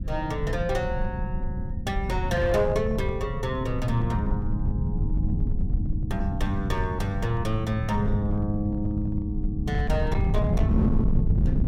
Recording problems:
distorted audio; hard clipping, uneven, signal-to-distortion ratio 11 dB
rumble; below 140 Hz, SNR 0 dB

